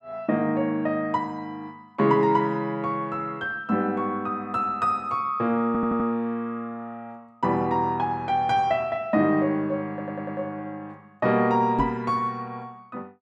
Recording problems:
audio stuttering; at 5.5 s and at 10 s
knock on the microphone; at 12 s; peak +2 dB vs average level

